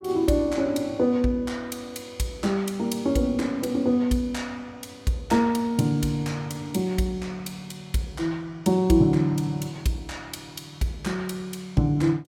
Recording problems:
none

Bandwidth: 16.5 kHz